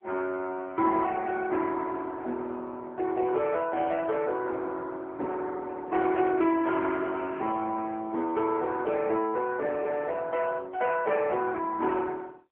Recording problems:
telephone audio; 240 Hz to 3.4 kHz, AMR-NB

